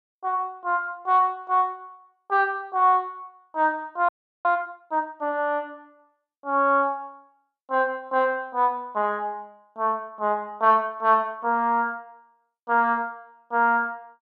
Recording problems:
frozen audio; at 4 s

